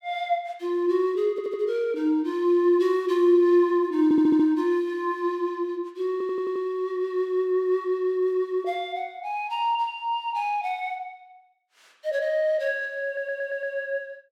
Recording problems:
audio stuttering; 4 times, first at 1.5 s

